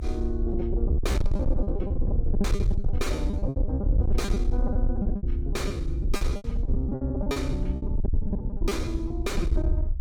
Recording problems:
distortion; soft clipping, signal-to-distortion ratio 7 dB
rumble; below 68 Hz, SNR -3 dB
lost packets; 19% of the sound replaced, filled with repeated pitch periods

